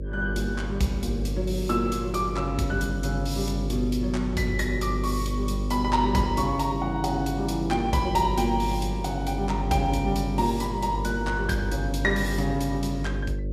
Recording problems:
electrical hum; 50 Hz, harmonics up to 600 Hz, SNR 4 dB

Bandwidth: 15 kHz